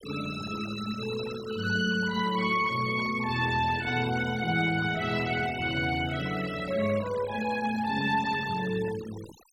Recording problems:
denoising artefacts; signal-to-artefact ratio 15 dB

